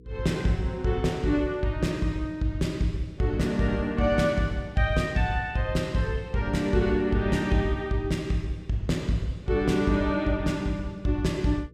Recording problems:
hum; 60 Hz, harmonics up to 480 Hz, SNR 24 dB

